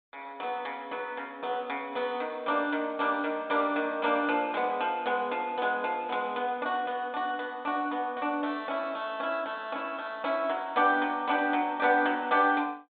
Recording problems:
treble cut off; nothing above 4 kHz

